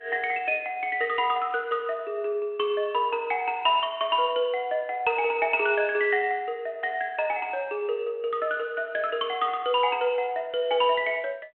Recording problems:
telephone audio; 240 Hz to 3.3 kHz, G.726

